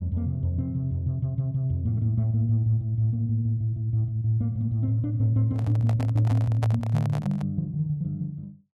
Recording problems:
handling noise; from 5.5 to 7.5 s; peak -4 dB vs average level

